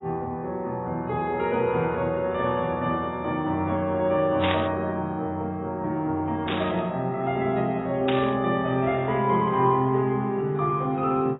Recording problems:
codec artefacts; AAC, log-spectral distance 2 dB, nothing above 3.4 kHz
static burst; at 4.5 s, at 6.5 s and at 8 s; peak +1 dB vs average level

